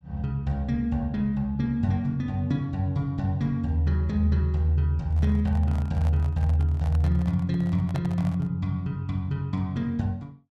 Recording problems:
microphone handling noise; from 5 to 8.5 s; peak -6 dB vs average level

